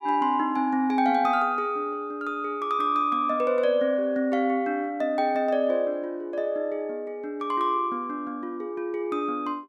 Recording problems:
none

